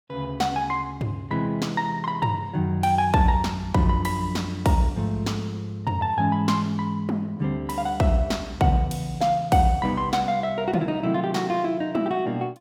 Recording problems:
none

